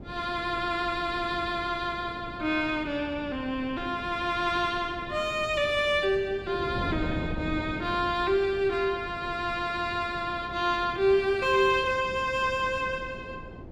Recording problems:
wind noise; below 380 Hz, SNR 13 dB

